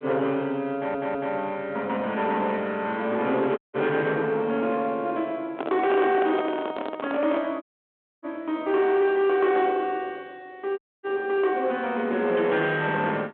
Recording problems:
phone line; 240 Hz to 3.8 kHz, G.726
distortion; soft clipping, signal-to-distortion ratio 12 dB
stutter; at 1 s
dropout; at 3.5 s, at 7.5 s for 0.5 s and at 11 s
handling noise; from 5.5 to 7.5 s; peak -1 dB vs average level

